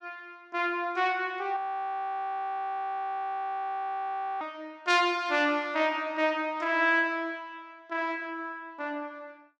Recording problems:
frozen audio; at 1.5 s for 3 s

